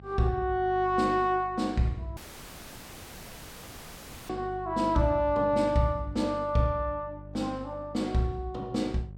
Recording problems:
hum; 50 Hz, harmonics up to 550 Hz, SNR 17 dB
audio cutting out; at 2 s for 2 s

